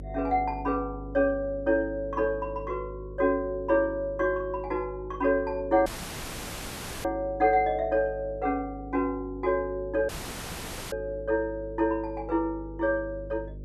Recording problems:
electrical hum; 50 Hz, harmonics up to 600 Hz, SNR 15 dB
audio cutting out; at 6 s for 1 s and at 10 s for 1 s

